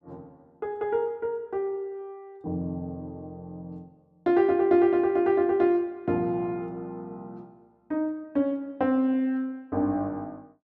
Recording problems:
none

